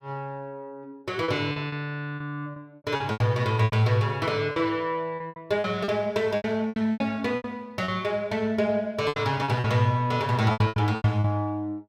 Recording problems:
lost packets; 13% of the sound replaced, filled with repeated pitch periods

